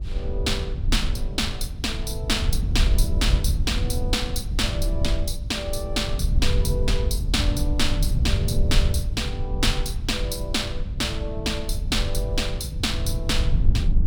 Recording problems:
rumble; below 82 Hz, SNR -1 dB

